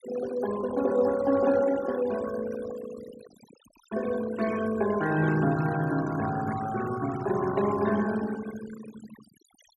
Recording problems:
denoising artefacts; signal-to-artefact ratio 14 dB

